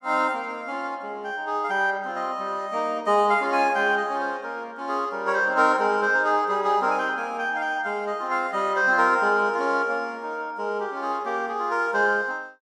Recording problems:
none

